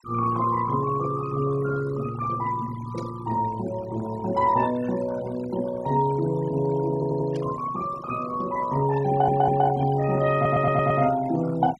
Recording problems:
noise reduction artefacts; signal-to-artefact ratio 16 dB
burst of static; at 3 s and at 7.5 s; peak -17 dB vs average level
stutter; at 7 s, at 9 s and at 10 s

